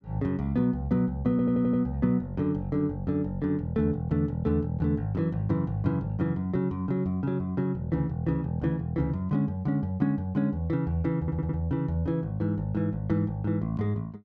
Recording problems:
audio stuttering; at 1.5 s and at 11 s

